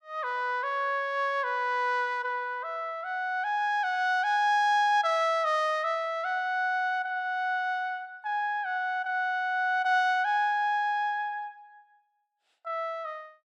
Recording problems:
none

